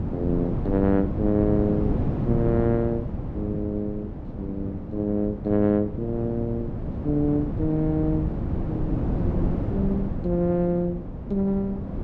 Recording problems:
wind noise; below 270 Hz, SNR 4 dB

